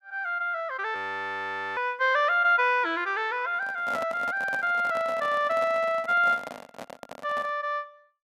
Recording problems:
frozen audio; at 1 s for 1 s
handling noise; from 3.5 to 7.5 s; peak -5 dB vs average level

